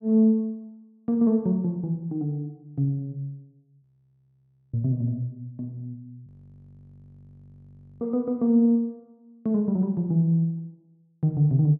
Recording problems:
frozen audio; at 4 s for 1 s and at 6.5 s for 1.5 s

